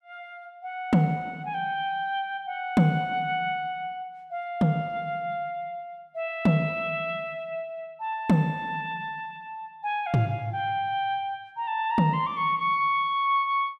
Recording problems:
none

